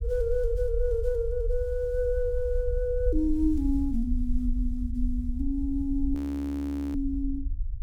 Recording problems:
low-frequency rumble; below 56 Hz, SNR 4 dB
frozen audio; at 6 s for 1 s

